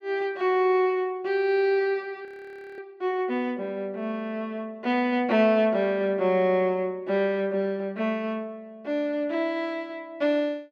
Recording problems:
frozen audio; at 2.5 s for 0.5 s

